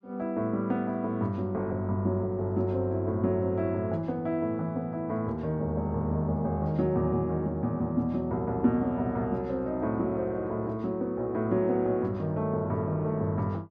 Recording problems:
none

